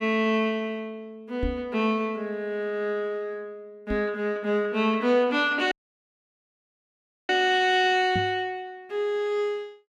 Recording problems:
microphone bump; at 1.5 s, at 4 s and at 8 s; peak -1 dB vs average level
dropout; at 5.5 s for 1.5 s

